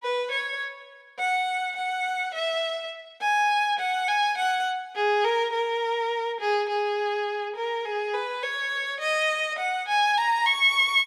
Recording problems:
none

